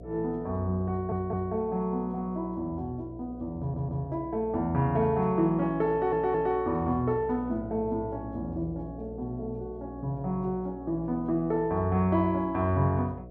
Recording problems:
hum; 60 Hz, harmonics up to 720 Hz, SNR 15 dB
audio stuttering; at 1 s, at 3.5 s and at 6 s

